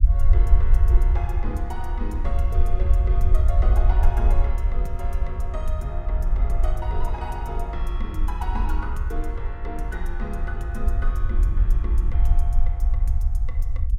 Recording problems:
low-frequency rumble; below 58 Hz, SNR -10 dB

